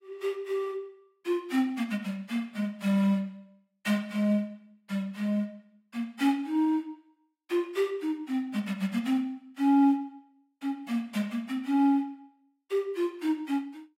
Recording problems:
lossy codec; AAC, log-spectral distance 2 dB, nothing above 15.5 kHz

